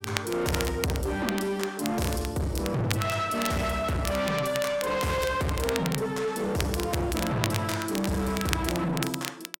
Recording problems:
distortion; soft clipping, signal-to-distortion ratio 7 dB
crackle; vinyl, SNR 8 dB

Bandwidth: 16.5 kHz